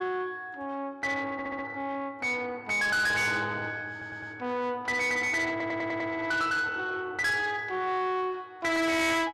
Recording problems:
distortion; soft clipping, signal-to-distortion ratio 7 dB
stutter; at 1.5 s, at 4 s and at 5.5 s

